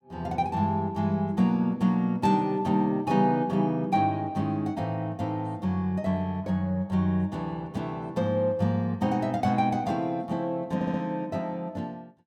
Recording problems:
stutter; at 11 s

